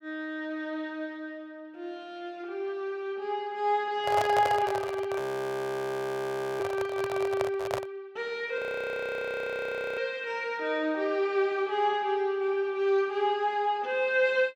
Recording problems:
handling noise; from 4 to 8 s; peak +3 dB vs average level
audio freezing; at 5 s for 1.5 s and at 8.5 s for 1.5 s

